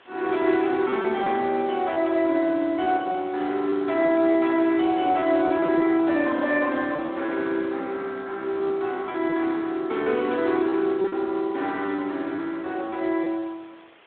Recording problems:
phone line; 260 Hz to 3.7 kHz, Speex
hiss; SNR 28 dB
packet loss; 5% of the sound replaced, filled with repeated pitch periods

